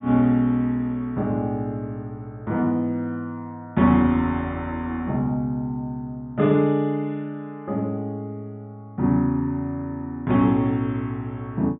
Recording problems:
treble missing; nothing above 4 kHz

